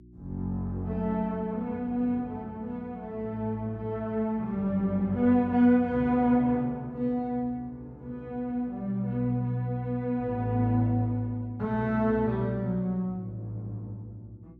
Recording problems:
electrical hum; 60 Hz, harmonics up to 360 Hz, SNR 24 dB

